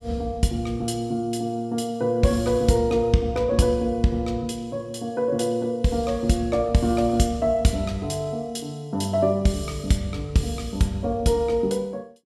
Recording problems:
none

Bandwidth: 14 kHz